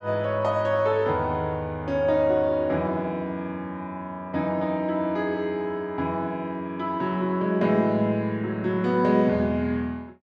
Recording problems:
none

